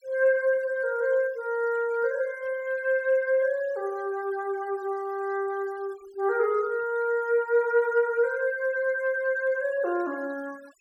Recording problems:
denoising artefacts; signal-to-artefact ratio 26 dB

